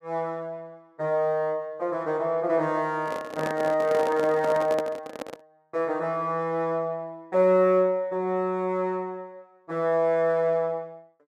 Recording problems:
microphone handling noise; from 3 to 5.5 s; peak -1 dB vs average level

